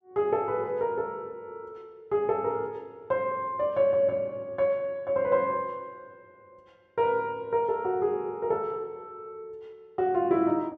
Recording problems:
none

